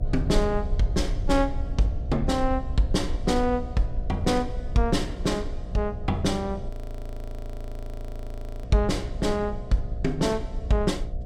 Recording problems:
hum; 60 Hz, harmonics up to 720 Hz, SNR 16 dB
low-frequency rumble; below 62 Hz, SNR 8 dB
frozen audio; at 6.5 s for 2 s

